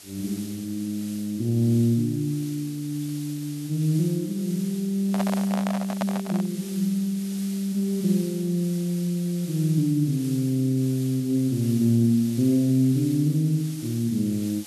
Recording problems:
background hiss; SNR 17 dB
handling noise; from 5 to 6.5 s; peak -1 dB vs average level

